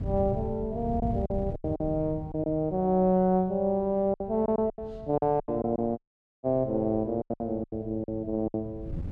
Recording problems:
wind noise; below 150 Hz, SNR 12 dB
packet loss; 10% of the sound replaced, filled with silence
audio cutting out; at 6 s

